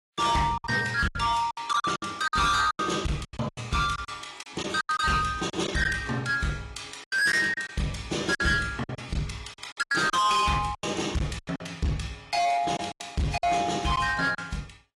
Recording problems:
codec artefacts; AAC, log-spectral distance 4 dB, nothing above 11 kHz
distorted audio; hard clipping, signal-to-distortion ratio 8 dB
lost packets; 12% of the sound replaced, filled with silence

